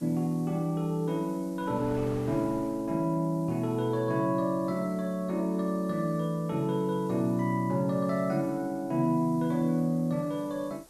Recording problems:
hiss; slope +5 dB per octave, SNR 27 dB
wind noise; below 950 Hz, SNR 25 dB

